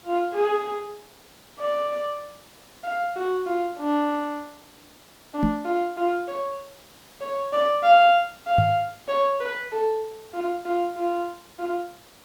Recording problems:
hiss; slope -3 dB per octave, SNR 25 dB
microphone bump; at 5.5 s and at 8.5 s; peak +5 dB vs average level

